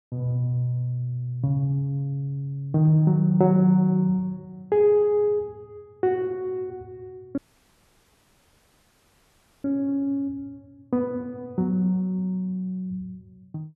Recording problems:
audio cutting out; at 7.5 s for 2.5 s

